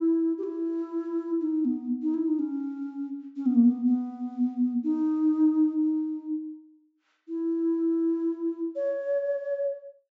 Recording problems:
low-pass filter; nothing above 8 kHz

